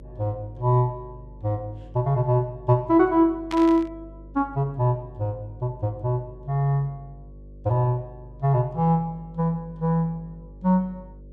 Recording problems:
electrical hum; 50 Hz, harmonics up to 600 Hz, SNR 21 dB
burst of static; at 3.5 s; peak -6 dB vs average level

